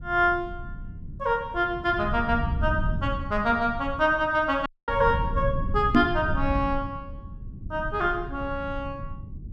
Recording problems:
low-frequency rumble; below 120 Hz, SNR 8 dB
audio cutting out; at 4.5 s
microphone thump; at 6 s; peak +9 dB vs average level

